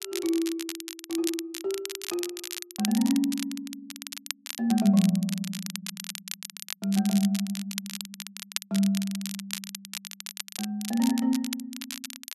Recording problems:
crackling; vinyl, SNR 9 dB

